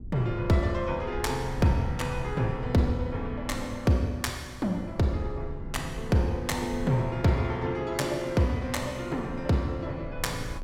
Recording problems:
low-frequency rumble; below 86 Hz, SNR 13 dB

